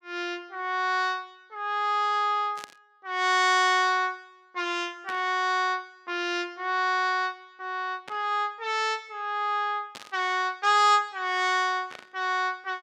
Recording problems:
burst of static; 5 times, first at 2.5 s; peak -9 dB vs average level

